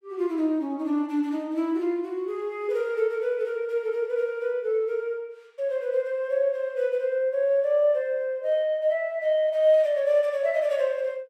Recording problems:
none

